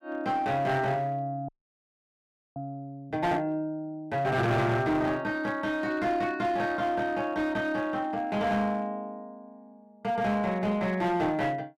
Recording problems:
distortion; hard clipping, uneven, signal-to-distortion ratio 10 dB
audio freezing; at 1.5 s for 1 s

